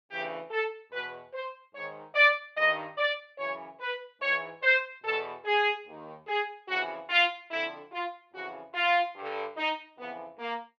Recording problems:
none

